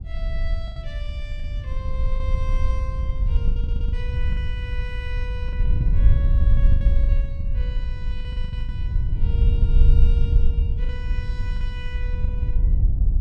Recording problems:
wind noise; below 66 Hz, SNR -16 dB
packet loss; 8% of the sound replaced, filled with the last packet
audio stuttering; at 3.5 s

